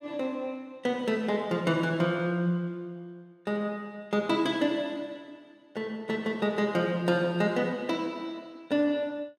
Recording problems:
none

